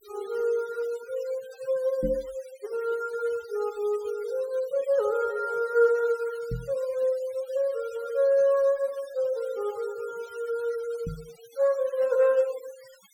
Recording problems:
noise reduction artefacts; signal-to-artefact ratio 23 dB
knock on the microphone; at 2 s, at 6.5 s and at 11 s; peak -1 dB vs average level

